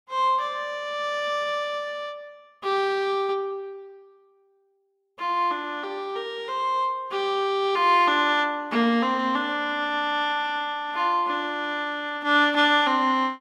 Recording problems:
none

